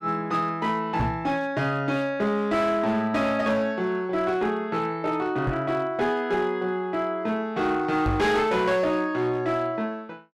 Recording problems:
distorted audio; hard clipping, signal-to-distortion ratio 12 dB
knock on the microphone; at 1 s, at 5.5 s and at 8 s; peak +3 dB vs average level

